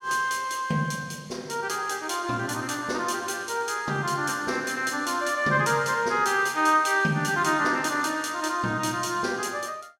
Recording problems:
none

